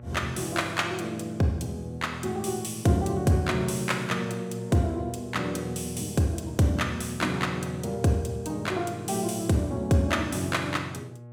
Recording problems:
electrical hum; 60 Hz, harmonics up to 1.1 kHz, SNR 15 dB

